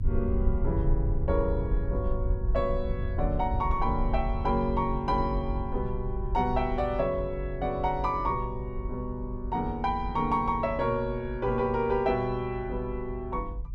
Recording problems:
low-frequency rumble; below 72 Hz, SNR 5 dB

